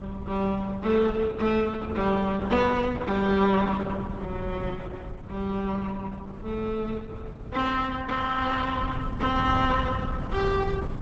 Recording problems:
codec artefacts; Opus, log-spectral distance 3 dB, nothing above 7.3 kHz
wind noise; below 190 Hz, SNR 10 dB

